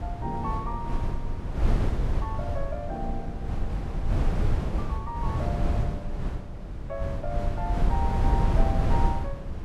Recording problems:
wind noise; below 110 Hz, SNR -6 dB

